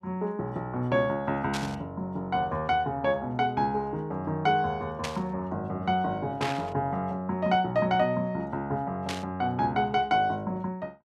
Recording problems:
static burst; 4 times, first at 1.5 s; peak 0 dB vs average level

